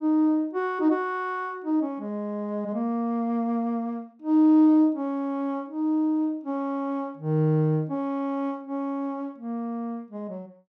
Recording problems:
none

